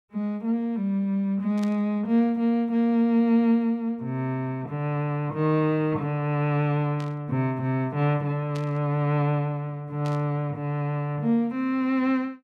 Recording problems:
burst of static; 4 times, first at 1.5 s; peak -12 dB vs average level

